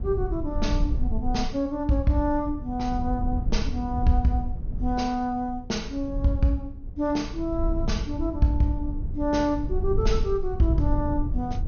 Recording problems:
treble cut off; nothing above 6.5 kHz
low-frequency rumble; below 74 Hz, SNR 5 dB

